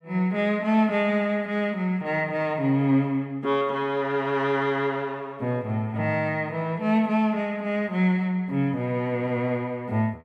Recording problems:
none

